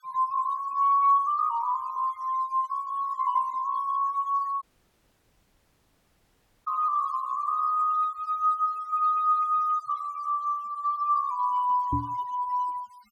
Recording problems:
denoising artefacts; signal-to-artefact ratio 26 dB
audio cutting out; at 4.5 s for 2 s
microphone bump; at 12 s; peak 0 dB vs average level

